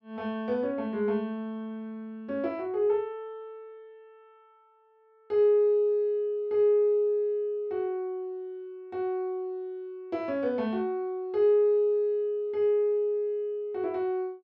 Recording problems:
none

